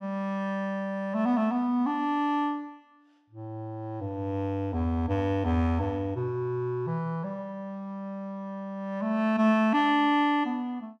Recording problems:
none

